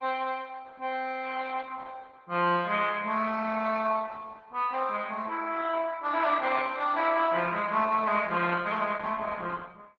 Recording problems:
lossy compression; Opus, log-spectral distance 4 dB

